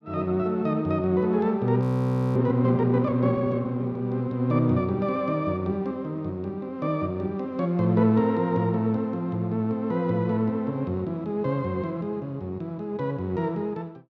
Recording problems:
frozen audio; at 2 s for 0.5 s

